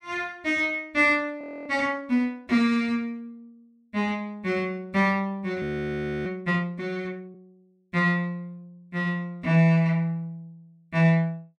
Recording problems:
frozen audio; at 1.5 s and at 5.5 s for 0.5 s

